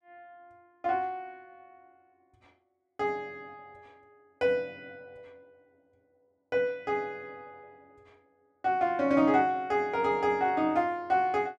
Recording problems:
none

